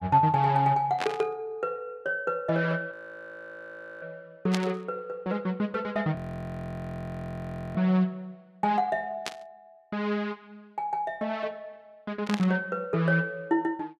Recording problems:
burst of static; 4 times, first at 1 s; peak +1 dB vs average level
frozen audio; at 3 s for 1 s and at 6 s for 1.5 s

